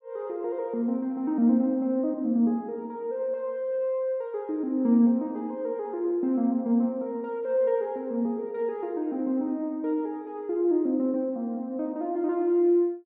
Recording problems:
none

